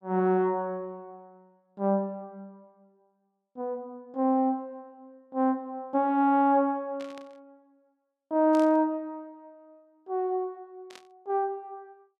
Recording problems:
static burst; at 7 s, at 8.5 s and at 11 s; peak -13 dB vs average level

